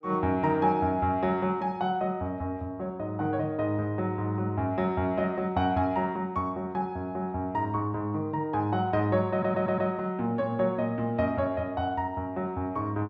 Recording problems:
audio stuttering; at 9.5 s

